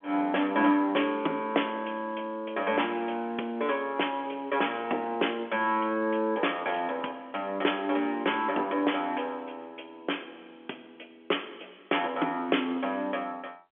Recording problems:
phone line; 240 Hz to 3.4 kHz, G.711

